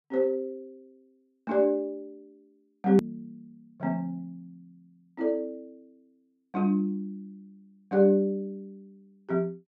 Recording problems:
click at an edit; at 3 s

